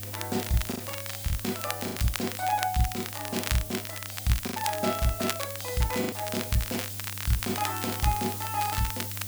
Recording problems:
mains hum; 50 Hz, harmonics up to 500 Hz, SNR 12 dB
hiss; slope +4 dB per octave, SNR 6 dB
crackle; vinyl, SNR 6 dB
packet loss; 5% of the sound replaced, filled with the last packet

